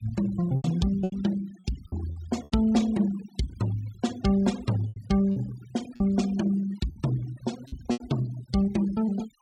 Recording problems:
noise reduction artefacts; signal-to-artefact ratio 18 dB
packet loss; 7% of the sound replaced, filled with repeated pitch periods

